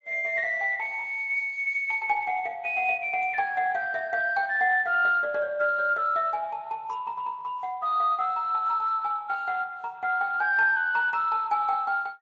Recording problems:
lossy codec; Speex, log-spectral distance 2 dB

